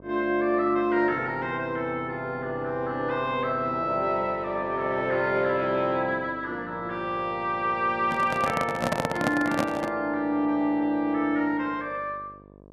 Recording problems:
electrical hum; 50 Hz, harmonics up to 1.3 kHz, SNR 21 dB
handling noise; from 8 to 10 s; peak +4 dB vs average level

